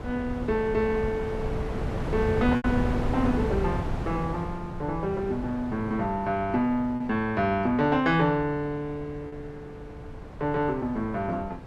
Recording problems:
wind noise; below 400 Hz, SNR 7 dB
packet loss; 1.4% of the sound replaced, filled with repeated pitch periods

